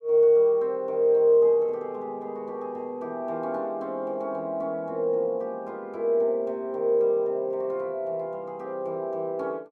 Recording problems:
none

